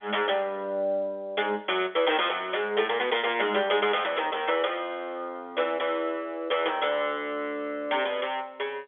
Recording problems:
telephone audio; 320 Hz to 3.5 kHz, G.711

